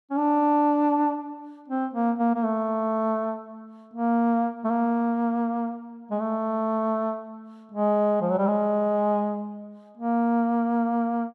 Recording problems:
none

